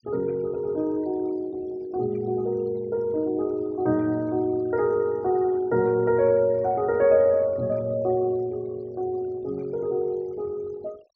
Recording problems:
low-pass filter; nothing above 6.5 kHz
noise reduction artefacts; signal-to-artefact ratio 27 dB

